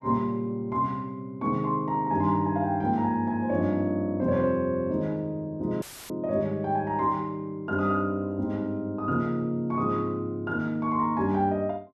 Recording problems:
audio cutting out; at 6 s; filled with static

